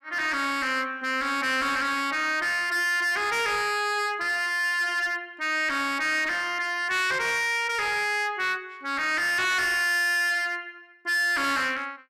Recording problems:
distortion; hard clipping, uneven, signal-to-distortion ratio 6 dB

